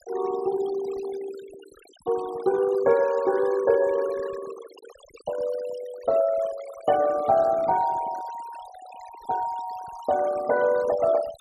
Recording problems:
noise reduction artefacts; signal-to-artefact ratio 18 dB

